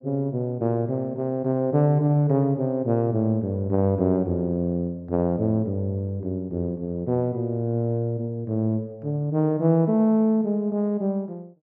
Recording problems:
none

